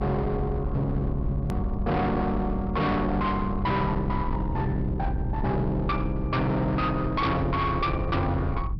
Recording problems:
treble missing; nothing above 5.5 kHz
distortion; hard clipping, signal-to-distortion ratio 7 dB
rumble; below 130 Hz, SNR 5 dB
edit click; at 1.5 s

